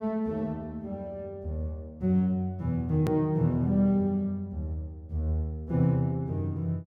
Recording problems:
click at an edit; at 3 s

